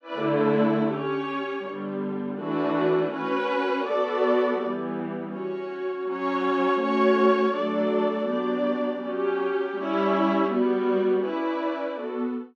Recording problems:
none

